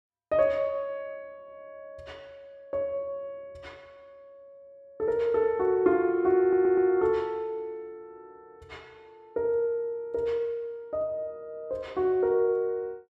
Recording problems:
audio stuttering; at 6.5 s

